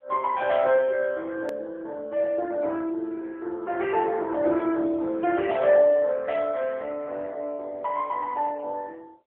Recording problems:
telephone audio; 300 Hz to 3.6 kHz, AMR-NB
edit click; at 1.5 s

